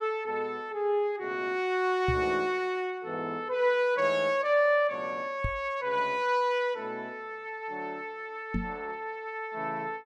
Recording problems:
microphone thump; at 2 s, at 5.5 s and at 8.5 s; peak +2 dB vs average level

